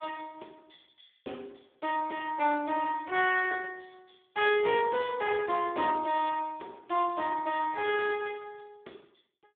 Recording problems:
telephone audio; 280 Hz to 3.4 kHz, Speex

